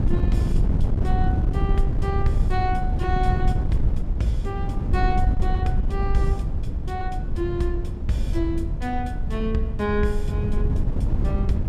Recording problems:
wind on the microphone; below 100 Hz, SNR -4 dB

